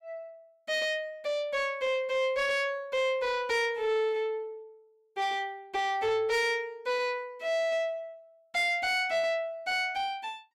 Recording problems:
distorted audio; soft clipping, signal-to-distortion ratio 12 dB

